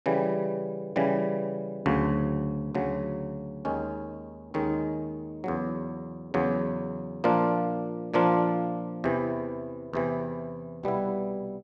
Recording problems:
none

